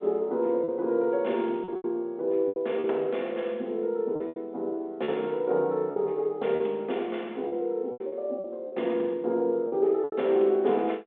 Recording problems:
telephone audio; 240 Hz to 3.6 kHz, G.726
packet loss; 8% of the sound replaced, filled with repeated pitch periods

